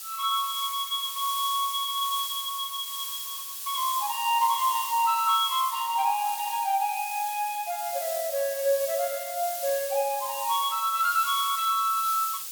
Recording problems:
hiss; slope +4 dB per octave, SNR 6 dB

